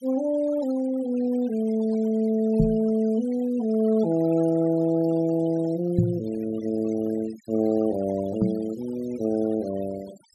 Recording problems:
noise reduction artefacts; signal-to-artefact ratio 21 dB
microphone thump; at 2.5 s, at 6 s and at 8.5 s; peak +7 dB vs average level

